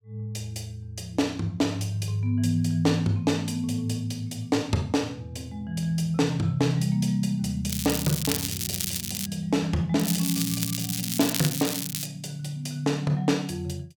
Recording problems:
crackling; from 7.5 to 9.5 s and from 10 to 12 s; loose cable, SNR 2 dB

